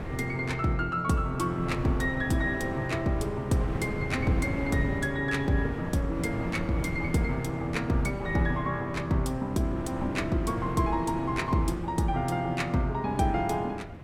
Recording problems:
wind on the microphone; below 390 Hz, SNR 8 dB

